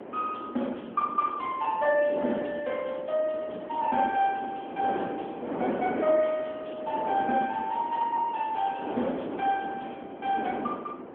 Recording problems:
telephone audio; 220 Hz to 3.3 kHz, AMR-NB
wind on the microphone; below 660 Hz, SNR 8 dB

